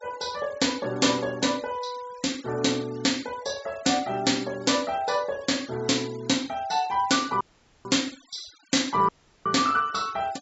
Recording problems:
low-pass filter; nothing above 8 kHz
denoising artefacts; signal-to-artefact ratio 21 dB
audio cutting out; at 7.5 s and at 9 s

